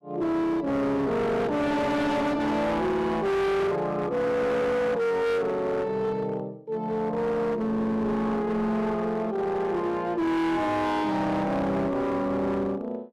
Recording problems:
distortion; hard clipping, signal-to-distortion ratio 7 dB

